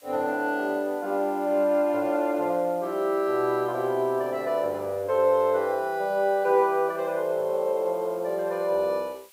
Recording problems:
hiss; slope +1 dB per octave, SNR 27 dB

